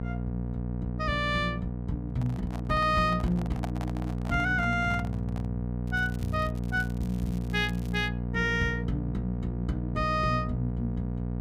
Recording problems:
hum; 60 Hz, harmonics up to 720 Hz, SNR 2 dB
microphone handling noise; from 2 to 5.5 s; peak -1 dB vs average level
crackling; from 6 to 8 s; loose cable, SNR 22 dB

